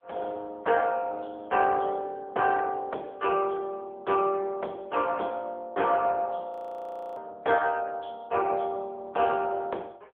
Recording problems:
telephone audio; 340 Hz to 3.3 kHz, AMR-NB
frozen audio; at 6.5 s for 0.5 s

